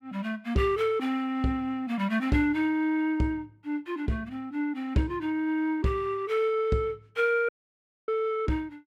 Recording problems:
dropout; at 7.5 s for 0.5 s

